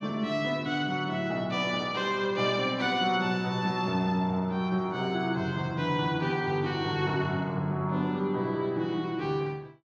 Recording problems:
none

